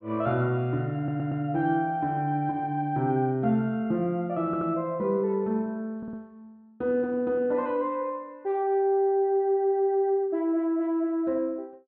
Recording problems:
low-pass filter; nothing above 4.6 kHz
audio stuttering; at 1 s, at 4.5 s and at 6 s

